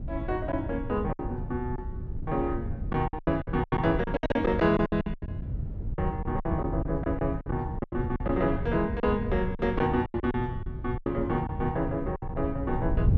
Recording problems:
wind noise; below 130 Hz, SNR 6 dB
packet loss; 13% of the sound replaced, filled with silence

